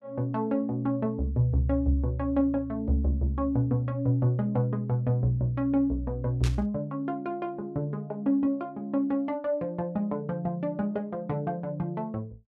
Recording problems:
burst of static; at 6.5 s; peak -5 dB vs average level

